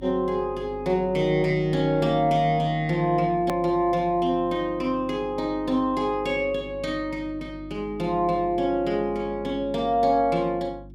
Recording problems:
electrical hum; 50 Hz, harmonics up to 350 Hz, SNR 19 dB
edit click; at 3.5 s

